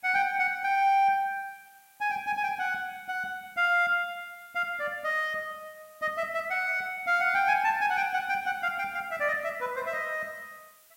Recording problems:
background hiss; slope +1 dB per octave, SNR 28 dB

